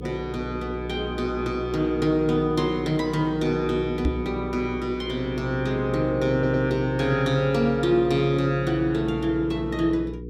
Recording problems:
hum; 60 Hz, harmonics up to 480 Hz, SNR 11 dB
microphone thump; at 4 s; peak +3 dB vs average level
stutter; at 6.5 s

